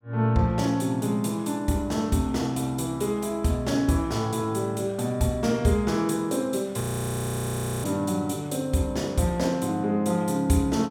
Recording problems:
frozen audio; at 7 s for 1 s

